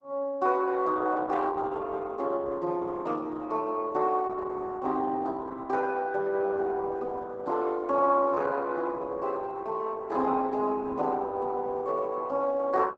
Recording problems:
lossy compression; Opus, log-spectral distance 3 dB, nothing above 7.8 kHz

